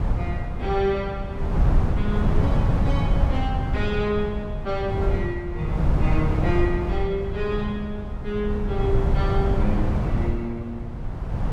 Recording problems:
wind noise; below 140 Hz, SNR -3 dB

